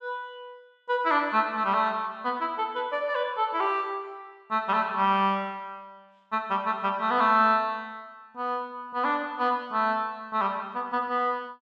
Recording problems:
none

